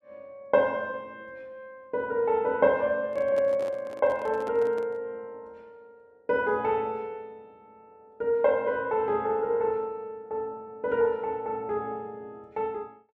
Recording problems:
handling noise; from 3 to 5 s; peak -9 dB vs average level

